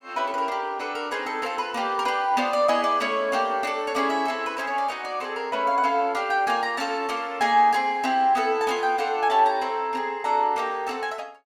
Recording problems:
none

